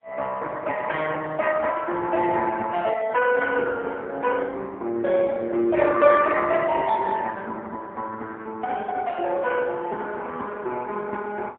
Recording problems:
telephone audio; 300 Hz to 3.5 kHz, AMR-NB, then MP3

